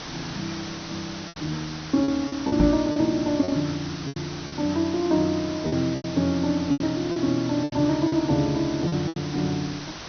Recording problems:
low-pass filter; nothing above 6.2 kHz
hiss; slope -2 dB per octave, SNR 11 dB
packet loss; 9% of the sound replaced, filled with repeated pitch periods
knock on the microphone; at 2.5 s; peak +6 dB vs average level

